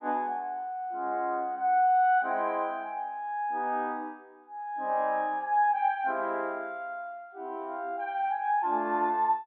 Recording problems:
treble missing; nothing above 4 kHz

